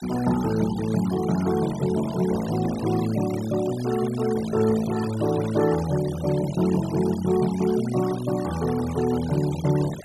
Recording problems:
denoising artefacts; signal-to-artefact ratio 16 dB

